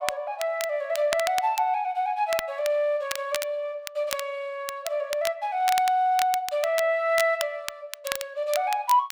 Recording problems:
crackle; vinyl, SNR 10 dB

